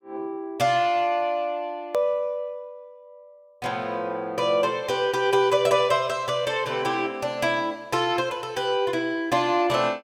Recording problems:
click at an edit; at 2 s

